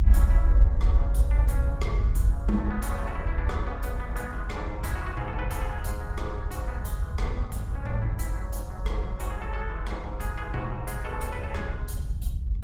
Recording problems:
lossy codec; Opus, log-spectral distance 2 dB
rumble; below 70 Hz, strongest tone 50 Hz, SNR -6 dB

